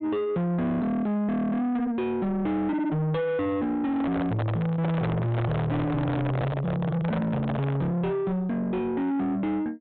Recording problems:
treble cut off; nothing above 4 kHz
distortion; soft clipping, signal-to-distortion ratio 8 dB
handling noise; from 4 to 8 s; peak +3 dB vs average level

